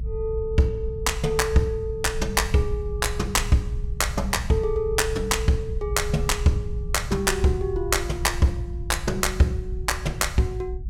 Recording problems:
low-frequency rumble; below 80 Hz, SNR 7 dB

